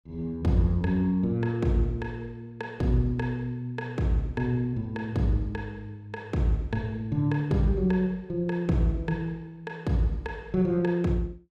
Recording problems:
none

